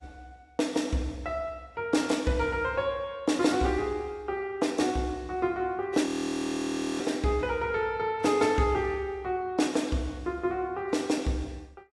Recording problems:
lossy codec; AAC, log-spectral distance 2 dB, nothing above 11.3 kHz
audio freezing; at 6 s for 1 s

